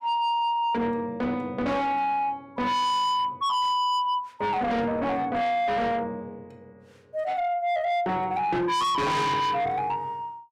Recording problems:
distorted audio; soft clipping, signal-to-distortion ratio 7 dB

